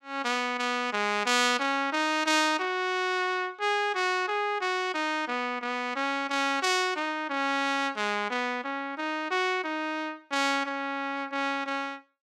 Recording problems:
none

